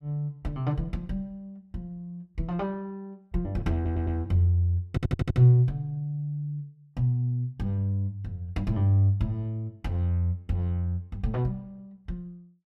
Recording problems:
audio stuttering; at 4 s and at 5 s

